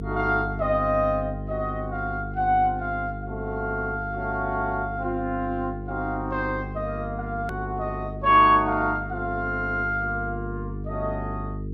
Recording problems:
electrical hum; 50 Hz, harmonics up to 450 Hz, SNR 9 dB
click at an edit; at 7.5 s

